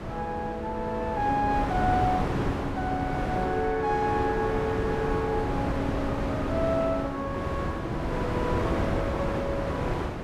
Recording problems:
wind on the microphone; below 740 Hz, SNR 1 dB

